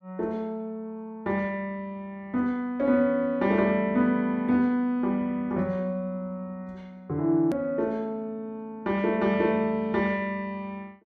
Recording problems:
edit click; at 7.5 s

